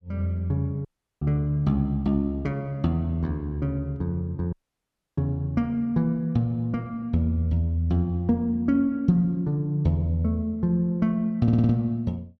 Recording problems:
audio cutting out; at 1 s and at 4.5 s for 0.5 s
stutter; at 11 s

